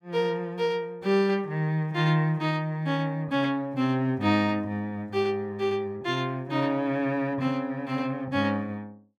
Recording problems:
none

